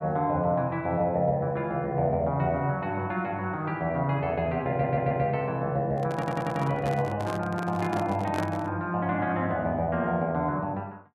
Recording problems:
audio stuttering; at 4.5 s and at 6 s
microphone handling noise; from 6 to 8.5 s; peak -2 dB vs average level

